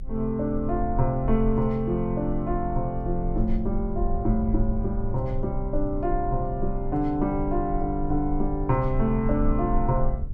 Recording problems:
low-frequency rumble; below 46 Hz, strongest tone 22 Hz, SNR 6 dB

